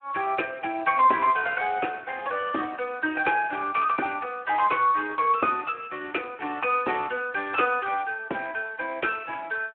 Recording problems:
telephone audio; 240 Hz to 3.2 kHz, Speex

